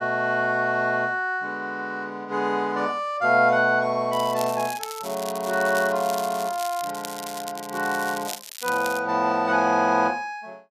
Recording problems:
crackle; from 4 to 9 s; loose cable, SNR 13 dB

